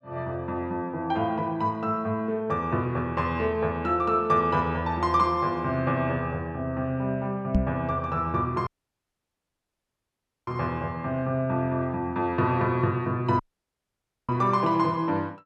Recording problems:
microphone thump; at 7.5 s; peak +6 dB vs average level
dropout; at 8.5 s for 2 s and at 13 s for 1 s

